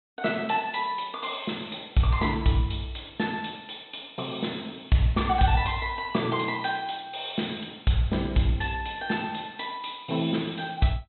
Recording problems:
treble cut off; nothing above 4.1 kHz

